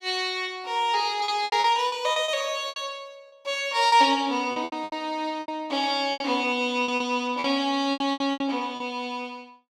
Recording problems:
lost packets; 12% of the sound replaced, filled with repeated pitch periods

